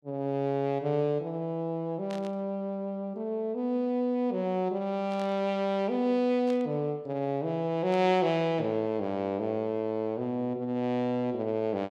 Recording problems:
static burst; 4 times, first at 2 s; peak -12 dB vs average level

